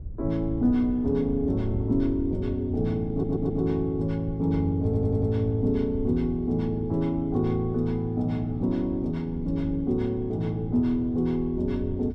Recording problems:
wind noise; below 94 Hz, SNR 13 dB
stutter; at 3 s and at 5 s

